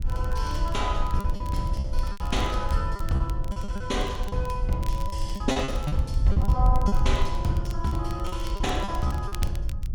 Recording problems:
wind on the microphone; below 66 Hz, SNR -1 dB
crackle; vinyl, SNR 18 dB
lost packets; 10% of the sound replaced, filled with repeated pitch periods

